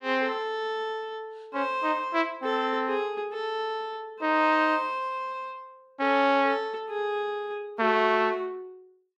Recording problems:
none

